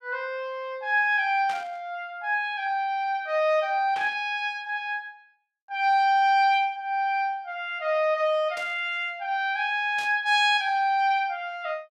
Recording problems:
burst of static; 4 times, first at 1.5 s; peak -11 dB vs average level

